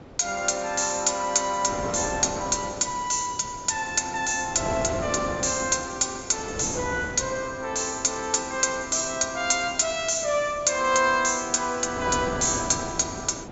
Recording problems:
low-pass filter; nothing above 8 kHz
wind noise; below 720 Hz, SNR 13 dB

